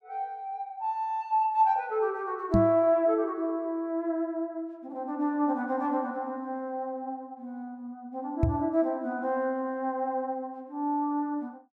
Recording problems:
microphone bump; at 2.5 s and at 8.5 s; peak +7 dB vs average level

